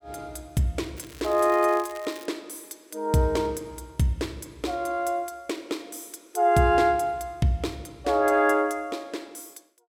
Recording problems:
crackle; from 1 to 2.5 s; loose cable, SNR 21 dB

